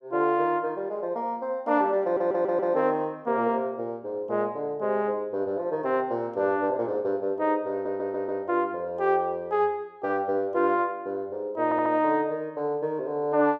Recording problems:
stutter; at 2 s, at 7.5 s and at 12 s

